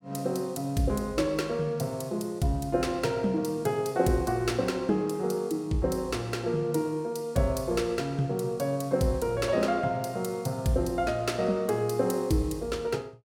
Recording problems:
none

